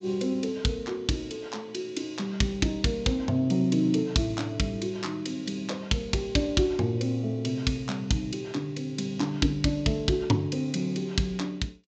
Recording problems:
low-pass filter; nothing above 8 kHz

